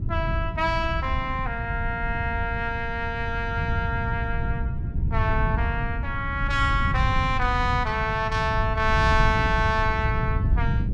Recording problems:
wind noise; below 120 Hz, SNR 2 dB

